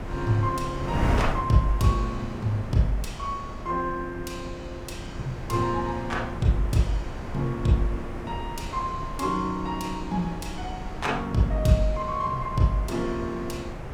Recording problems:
wind noise; below 430 Hz, SNR 7 dB

